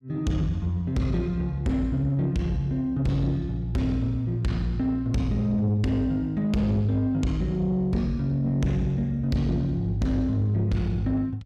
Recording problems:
distorted audio; soft clipping, signal-to-distortion ratio 10 dB

